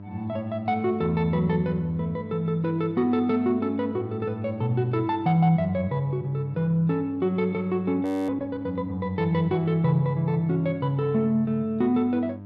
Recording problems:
hum; 50 Hz, harmonics up to 1 kHz, SNR 16 dB
frozen audio; at 8 s

